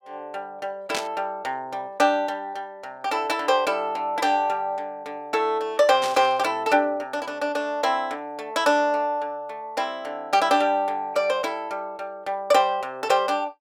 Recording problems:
burst of static; at 1 s and at 6 s; peak -1 dB vs average level

